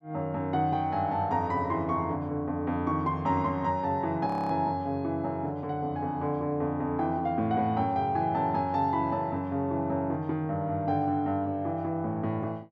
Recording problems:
frozen audio; at 4.5 s

